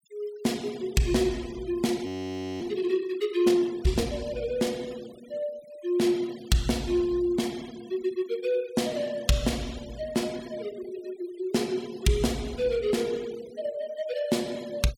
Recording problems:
denoising artefacts; signal-to-artefact ratio 20 dB
audio freezing; at 2 s for 0.5 s

